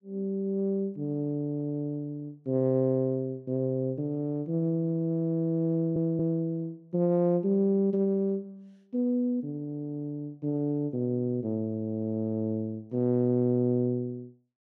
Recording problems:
stutter; at 5.5 s

